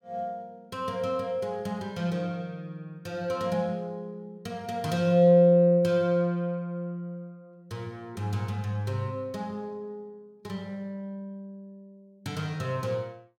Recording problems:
none

